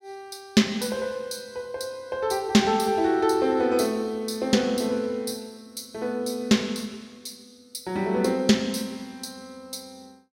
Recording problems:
none

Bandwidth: 16 kHz